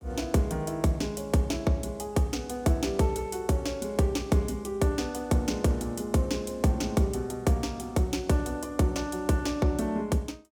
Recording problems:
none

